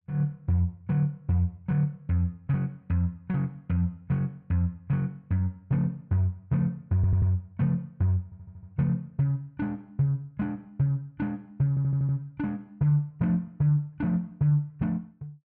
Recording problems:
stutter; at 7 s, at 8 s and at 12 s

